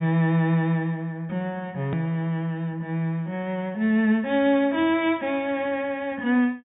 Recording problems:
treble missing; nothing above 4 kHz
click at an edit; at 2 s

